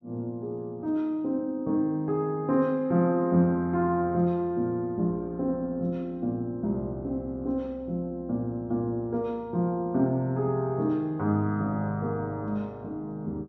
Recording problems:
none

